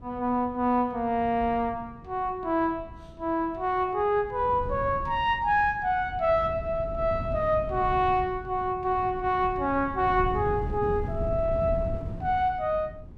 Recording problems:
wind on the microphone; below 160 Hz, SNR 11 dB

